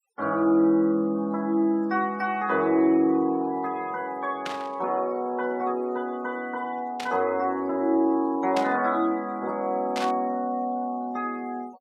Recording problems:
noise reduction artefacts; signal-to-artefact ratio 27 dB
static burst; 4 times, first at 4.5 s; peak -3 dB vs average level

